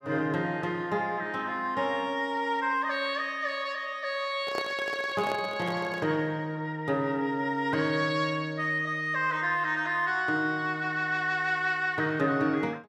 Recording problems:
handling noise; from 4.5 to 6 s; peak -2 dB vs average level

